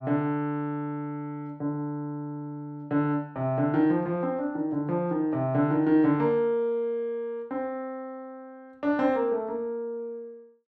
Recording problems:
none

